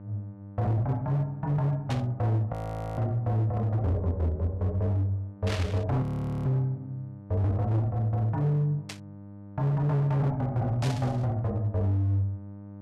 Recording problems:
distorted audio; hard clipping, signal-to-distortion ratio 11 dB
hum; 50 Hz, harmonics up to 900 Hz, SNR 17 dB
burst of static; 4 times, first at 2 s; peak -3 dB vs average level
frozen audio; at 2.5 s and at 6 s

